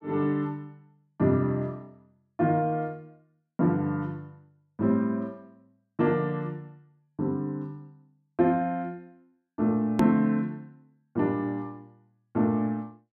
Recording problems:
hard cut with a click; at 10 s

